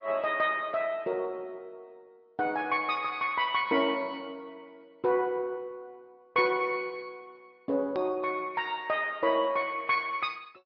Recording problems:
treble missing; nothing above 5 kHz
lossy compression; MP2, then MP3, log-spectral distance 2 dB
hard cut with a click; at 8 s

